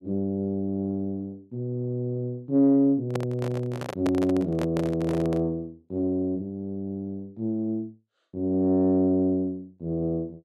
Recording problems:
handling noise; from 3 to 5.5 s; peak -1 dB vs average level

